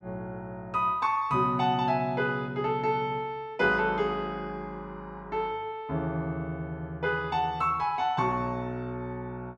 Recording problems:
none

